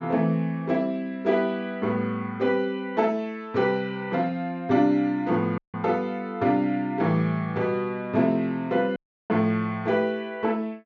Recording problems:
low-pass filter; nothing above 7 kHz
audio cutting out; at 5.5 s and at 9 s

